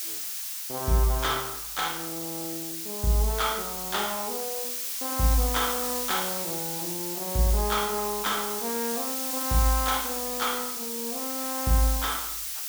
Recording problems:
background hiss; slope +5 dB per octave, SNR 1 dB

